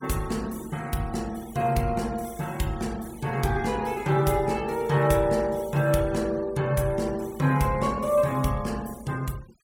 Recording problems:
noise reduction artefacts; signal-to-artefact ratio 22 dB

